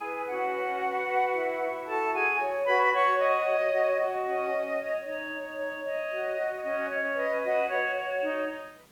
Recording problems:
background hiss; slope -3 dB per octave, SNR 29 dB

